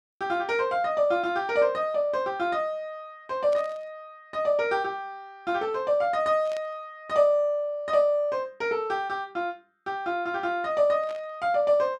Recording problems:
static burst; at 3.5 s, at 6.5 s and at 11 s; peak -14 dB vs average level

